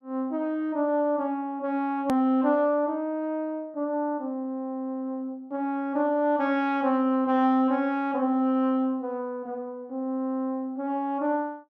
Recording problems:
click at an edit; at 2 s

